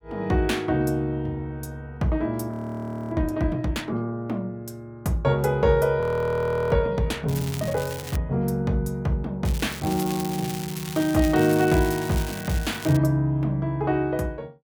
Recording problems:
audio freezing; at 2.5 s for 0.5 s and at 6 s for 0.5 s
crackle; at 7.5 s and from 9.5 to 13 s; loose cable, SNR 12 dB

